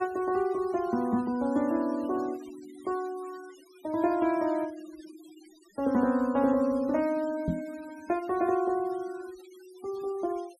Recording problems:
noise reduction artefacts; signal-to-artefact ratio 23 dB
microphone thump; at 7.5 s; peak +3 dB vs average level

